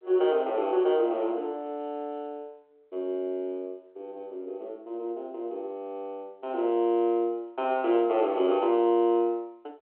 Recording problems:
telephone audio; 300 Hz to 3.3 kHz, G.726

